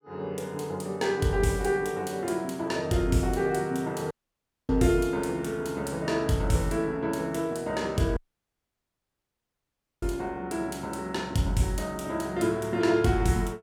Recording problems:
audio cutting out; at 4 s for 0.5 s and at 8 s for 2 s

